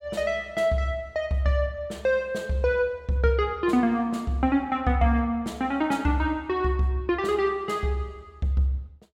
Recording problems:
none

